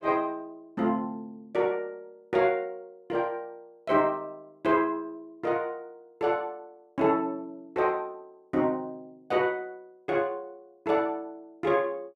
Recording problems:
none

